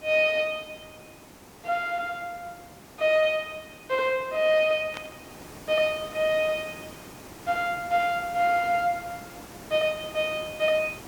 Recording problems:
background hiss; slope -5 dB per octave, SNR 18 dB
static burst; at 5 s; peak -7 dB vs average level

